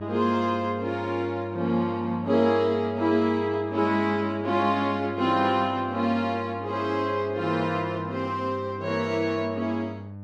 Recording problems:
hum; 50 Hz, harmonics up to 900 Hz, SNR 13 dB

